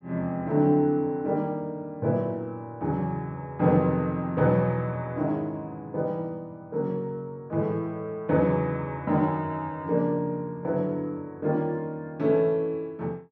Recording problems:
none

